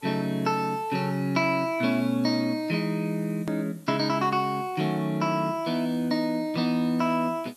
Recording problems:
hiss; SNR 27 dB
click at an edit; at 3.5 s

